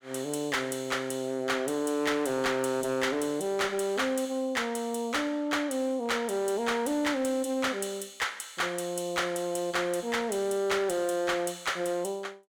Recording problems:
distortion; hard clipping, signal-to-distortion ratio 11 dB

